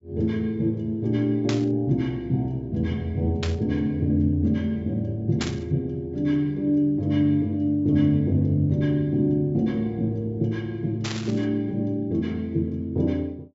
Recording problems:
low-pass filter; nothing above 7.5 kHz
burst of static; 4 times, first at 1.5 s; peak -1 dB vs average level

